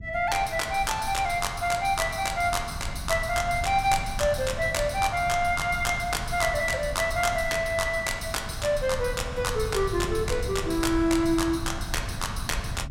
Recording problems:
low-frequency rumble; below 120 Hz, SNR 11 dB

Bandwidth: 16 kHz